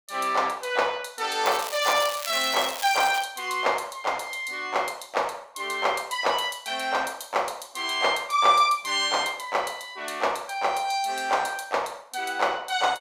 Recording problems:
crackling; from 1.5 to 3 s; loose cable, SNR 9 dB

